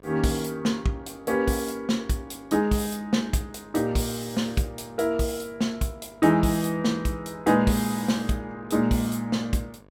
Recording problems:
hum; 50 Hz, harmonics up to 1.8 kHz, SNR 28 dB

